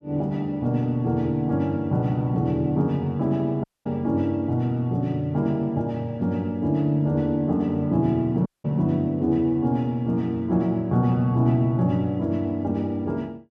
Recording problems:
dropout; at 3.5 s and at 8.5 s

